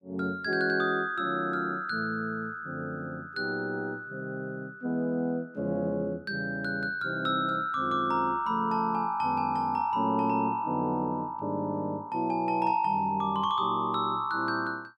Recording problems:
none

